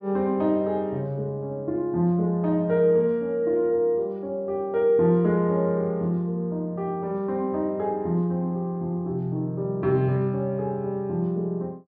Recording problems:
none

